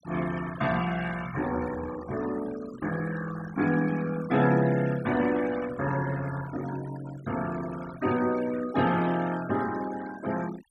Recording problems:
denoising artefacts; signal-to-artefact ratio 15 dB

